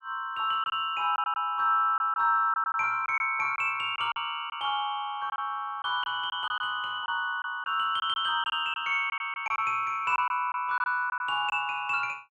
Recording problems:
lost packets; 7% of the sound replaced, filled with silence

